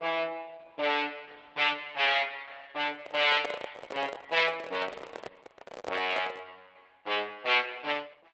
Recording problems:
lossy compression; Opus, log-spectral distance 4 dB
handling noise; from 3 to 6.5 s; peak -1 dB vs average level

